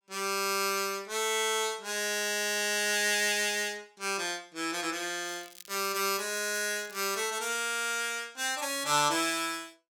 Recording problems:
crackle; from 5.5 to 7.5 s; loose cable, SNR 21 dB

